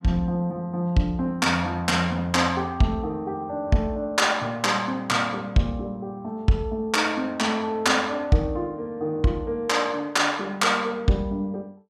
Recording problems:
none

